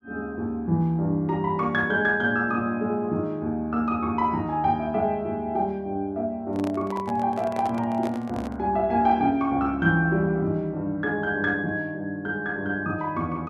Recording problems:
handling noise; from 6.5 to 8.5 s; peak -5 dB vs average level

